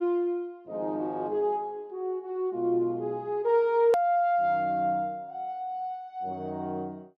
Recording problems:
click at an edit; at 4 s

